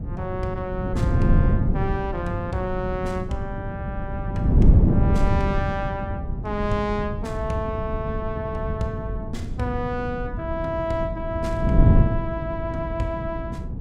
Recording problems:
wind noise; below 160 Hz, SNR -3 dB

